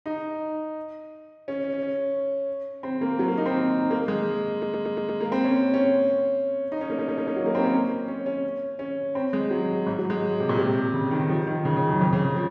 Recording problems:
stutter; at 1.5 s, at 4.5 s and at 7 s

